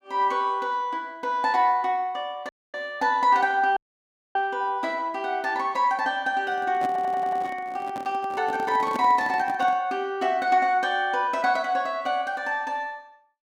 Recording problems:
audio cutting out; at 2.5 s and at 4 s for 0.5 s
handling noise; from 6.5 to 10 s; peak -3 dB vs average level
audio stuttering; at 7 s

